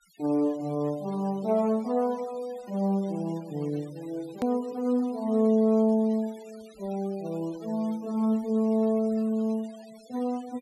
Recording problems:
noise reduction artefacts; signal-to-artefact ratio 24 dB
hard cut with a click; at 4.5 s

